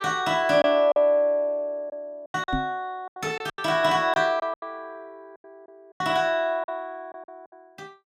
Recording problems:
lost packets; 11% of the sound replaced, filled with silence
microphone bump; at 2.5 s; peak -1 dB vs average level

